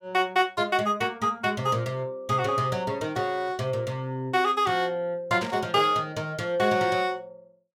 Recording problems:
static burst; at 5.5 s; peak -7 dB vs average level

